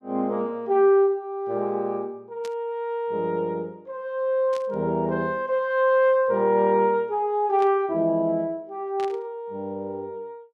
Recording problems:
static burst; 4 times, first at 2.5 s; peak -12 dB vs average level

